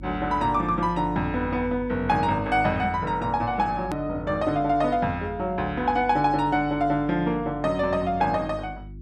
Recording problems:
hum; 50 Hz, harmonics up to 350 Hz, SNR 16 dB
edit click; at 4 s

